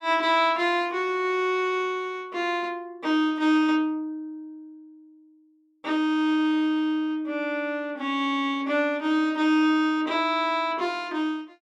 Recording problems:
none

